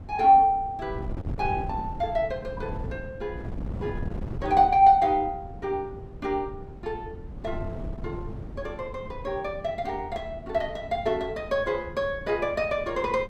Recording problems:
wind noise; below 200 Hz, SNR 13 dB

